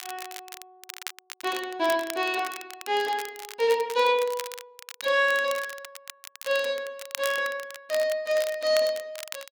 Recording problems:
crackle; vinyl, SNR 13 dB

